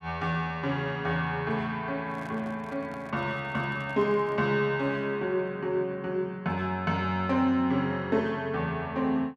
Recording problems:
handling noise; from 2 to 4.5 s; peak -12 dB vs average level

